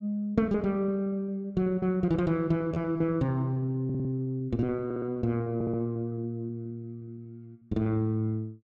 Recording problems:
packet loss; 13% of the sound replaced, filled with repeated pitch periods
audio stuttering; at 4 s, at 5 s and at 5.5 s

